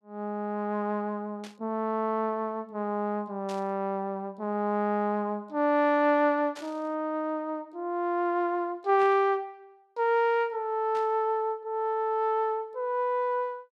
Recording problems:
burst of static; 5 times, first at 1.5 s; peak -12 dB vs average level

